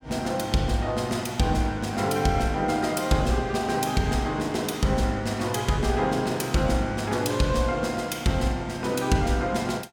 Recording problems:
none

